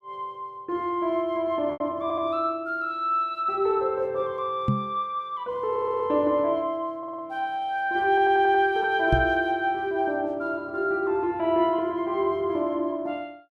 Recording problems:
lost packets; 0.8% of the sound replaced, filled with repeated pitch periods
stutter; 4 times, first at 2 s
microphone bump; at 4.5 s and at 9 s; peak +5 dB vs average level

